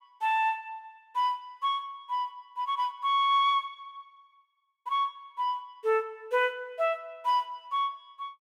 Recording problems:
none

